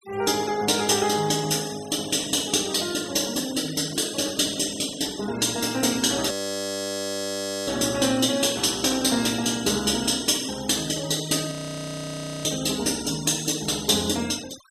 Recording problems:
denoising artefacts; signal-to-artefact ratio 16 dB
frozen audio; at 6.5 s for 1.5 s and at 12 s for 1 s

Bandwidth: 14 kHz